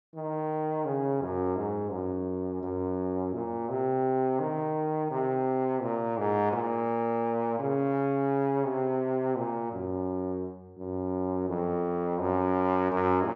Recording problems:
low-pass filter; nothing above 8 kHz

